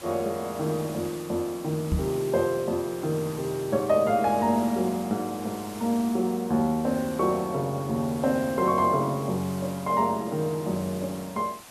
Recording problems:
hiss; SNR 17 dB
microphone thump; at 2 s; peak +3 dB vs average level

